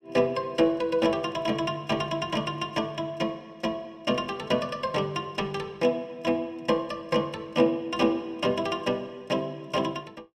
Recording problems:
none

